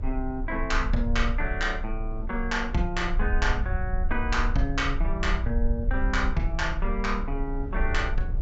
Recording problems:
low-pass filter; nothing above 7.6 kHz
low-frequency rumble; below 54 Hz, strongest tone 28 Hz, SNR 2 dB
wind noise; below 370 Hz, SNR 18 dB

